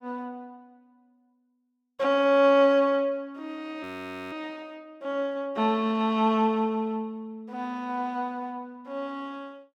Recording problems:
audio freezing; at 4 s

